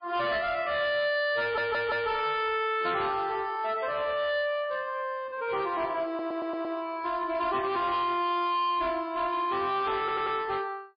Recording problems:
lossy codec; MP3, log-spectral distance 3 dB, nothing above 4.1 kHz
distorted audio; hard clipping, signal-to-distortion ratio 11 dB
audio stuttering; at 1.5 s, at 6 s and at 10 s

